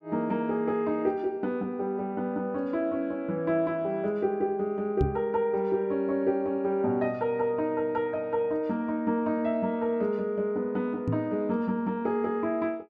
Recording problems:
microphone bump; at 5 s and at 11 s; peak +4 dB vs average level

